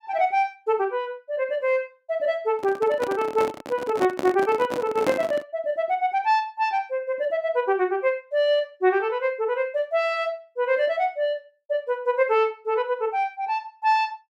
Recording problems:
handling noise; from 2.5 to 5.5 s; peak +2 dB vs average level

